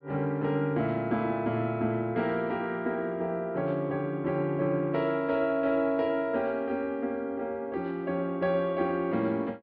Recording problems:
treble missing; nothing above 5.5 kHz

